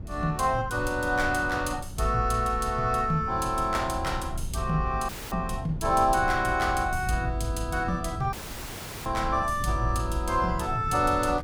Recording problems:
low-frequency rumble; below 120 Hz, SNR 10 dB
dropout; at 5 s and at 8.5 s for 0.5 s

